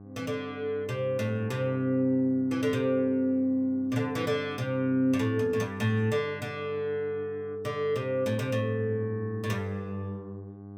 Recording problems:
electrical hum; 50 Hz, harmonics up to 1.1 kHz, SNR 16 dB

